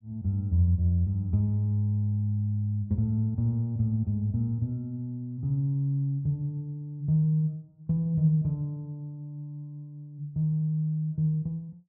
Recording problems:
none

